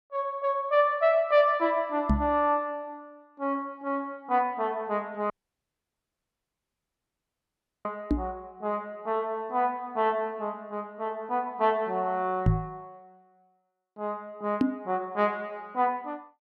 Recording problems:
microphone thump; 4 times, first at 2 s; peak +9 dB vs average level
dropout; at 5.5 s for 2.5 s

